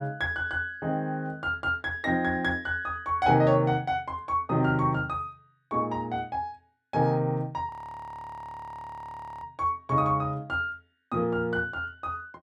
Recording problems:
audio freezing; at 7.5 s for 1.5 s

